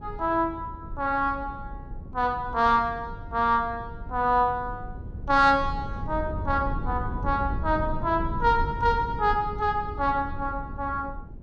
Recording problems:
rumble; below 130 Hz, SNR 10 dB

